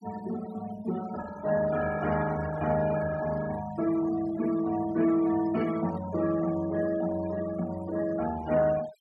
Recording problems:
denoising artefacts; signal-to-artefact ratio 16 dB

